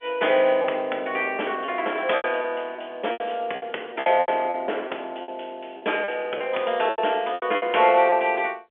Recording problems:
phone line; 280 Hz to 3.4 kHz, G.711
lost packets; 11% of the sound replaced, filled with repeated pitch periods

